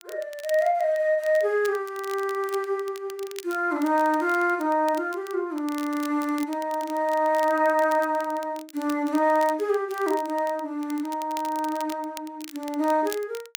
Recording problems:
crackle; vinyl, SNR 19 dB

